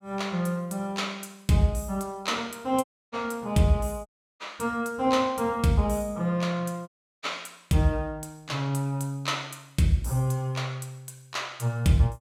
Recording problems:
dropout; at 3 s, at 4 s and at 7 s

